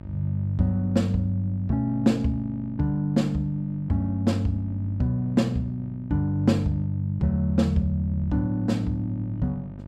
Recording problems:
hum; 50 Hz, harmonics up to 900 Hz, SNR 17 dB

